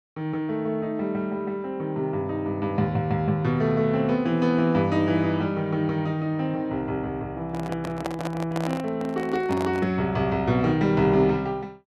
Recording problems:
handling noise; from 7.5 to 10 s; peak -2 dB vs average level

